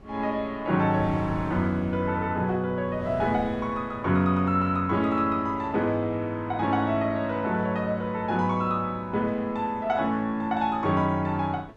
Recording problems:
wind on the microphone; below 440 Hz, SNR 19 dB

